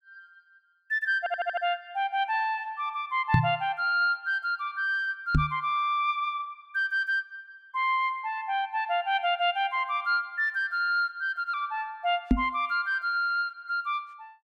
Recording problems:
audio stuttering; at 1 s
microphone thump; at 3.5 s, at 5.5 s and at 12 s; peak +9 dB vs average level

